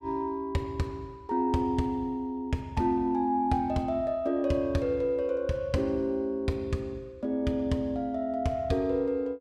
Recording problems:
none

